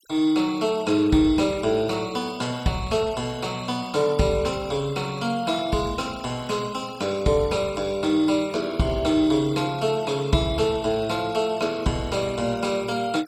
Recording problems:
denoising artefacts; signal-to-artefact ratio 21 dB

